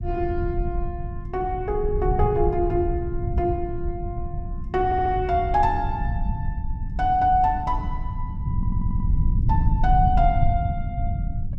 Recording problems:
low-frequency rumble; below 110 Hz, SNR 3 dB
audio stuttering; at 5 s and at 8.5 s

